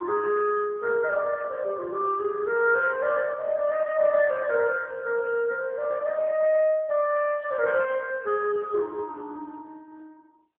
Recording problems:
phone line; 370 Hz to 2.5 kHz, AMR-NB

